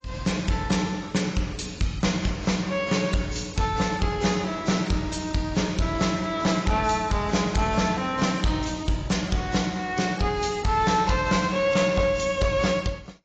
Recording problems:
lossy codec; AAC, log-spectral distance 5 dB, nothing above 7.3 kHz
distorted audio; hard clipping, uneven, signal-to-distortion ratio 12 dB

